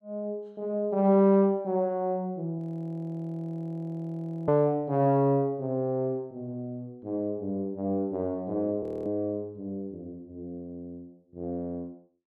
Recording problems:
frozen audio; at 2.5 s for 2 s and at 9 s

